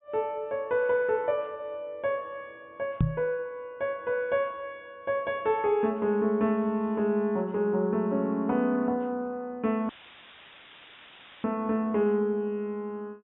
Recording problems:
treble missing; nothing above 3.8 kHz
microphone bump; at 3 s; peak +7 dB vs average level
audio cutting out; at 10 s for 1.5 s; filled with static

